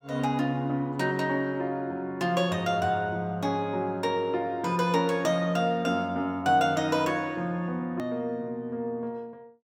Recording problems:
edit click; at 8 s

